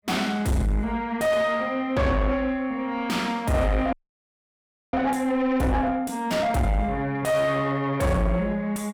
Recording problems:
distorted audio; soft clipping, signal-to-distortion ratio 7 dB
audio freezing; at 4 s for 1 s

